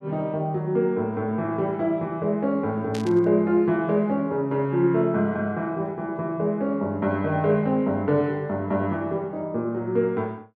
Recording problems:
burst of static; at 3 s; peak -8 dB vs average level

